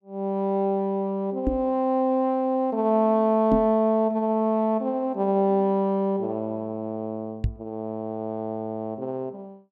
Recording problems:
microphone thump; at 1.5 s, at 3.5 s and at 7.5 s; peak +3 dB vs average level

